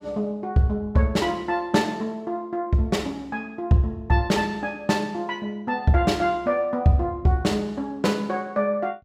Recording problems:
none

